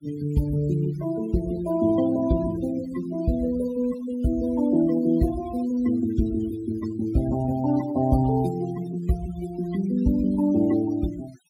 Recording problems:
noise reduction artefacts; signal-to-artefact ratio 18 dB

